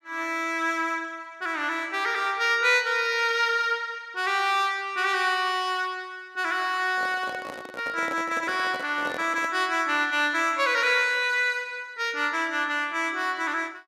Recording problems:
handling noise; from 7 to 9.5 s; peak -7 dB vs average level

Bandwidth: 14.5 kHz